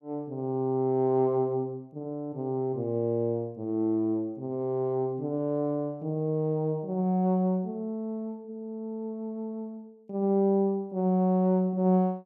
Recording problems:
none

